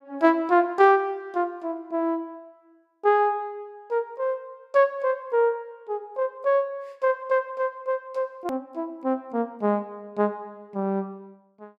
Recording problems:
edit click; at 8.5 s

